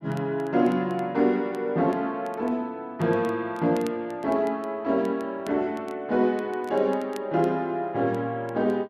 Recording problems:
crackling; vinyl, SNR 28 dB

